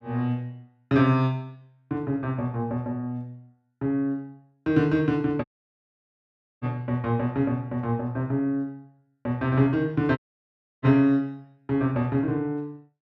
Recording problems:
dropout; at 5.5 s for 1 s and at 10 s for 0.5 s

